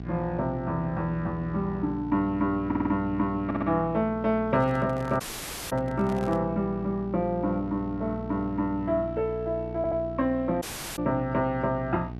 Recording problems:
hum; 60 Hz, harmonics up to 840 Hz, SNR 11 dB
stutter; at 2.5 s, at 3.5 s and at 10 s
handling noise; from 4.5 to 6.5 s; peak -8 dB vs average level
audio cutting out; at 5 s for 0.5 s and at 11 s

